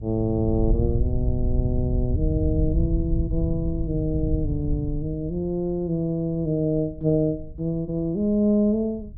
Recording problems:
wind on the microphone; below 94 Hz, SNR 3 dB

